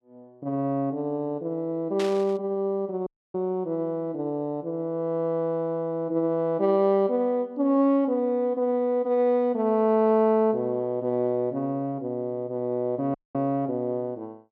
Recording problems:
burst of static; at 2 s; peak -6 dB vs average level
audio cutting out; at 3 s and at 13 s

